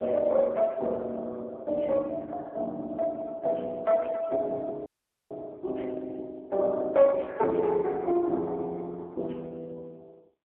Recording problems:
telephone audio; 280 Hz to 2 kHz, AMR-NB
audio cutting out; at 5 s

